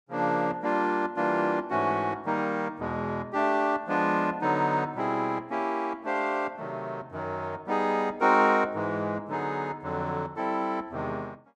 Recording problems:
none

